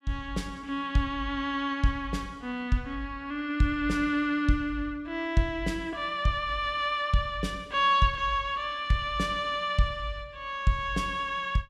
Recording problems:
none

